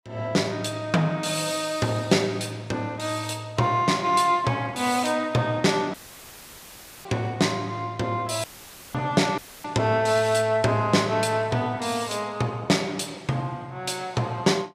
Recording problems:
dropout; at 6 s for 1 s, at 8.5 s for 0.5 s and at 9.5 s; filled with static

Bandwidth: 15 kHz